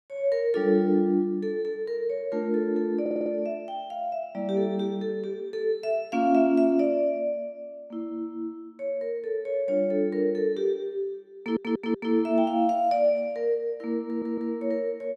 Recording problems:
audio stuttering; at 3 s, at 11 s and at 14 s

